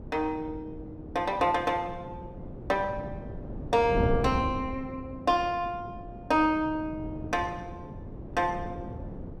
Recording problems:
wind noise; below 310 Hz, SNR 9 dB

